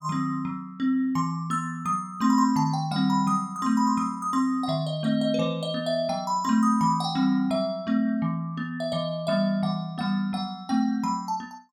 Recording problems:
none

